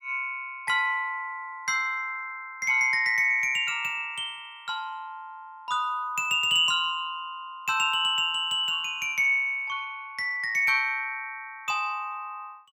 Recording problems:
none

